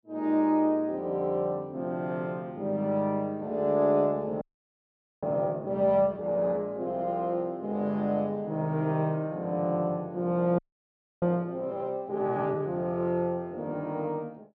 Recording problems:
frozen audio; at 4.5 s for 1 s and at 11 s for 0.5 s

